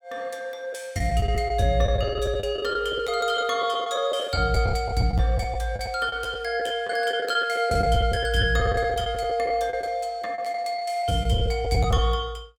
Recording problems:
packet loss; 12% of the sound replaced, filled with the last packet

